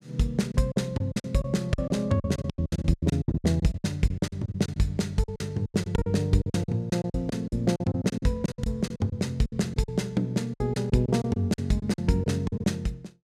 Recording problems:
lost packets; 18% of the sound replaced, filled with silence

